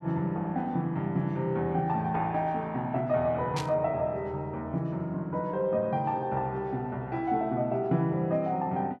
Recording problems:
burst of static; at 3.5 s; peak -3 dB vs average level

